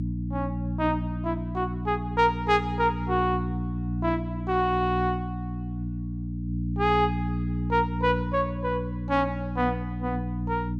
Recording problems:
hum; 60 Hz, harmonics up to 300 Hz, SNR 3 dB

